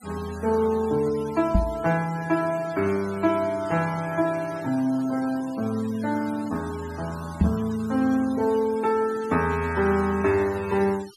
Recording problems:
denoising artefacts; signal-to-artefact ratio 19 dB
microphone thump; at 1.5 s and at 7.5 s; peak +8 dB vs average level

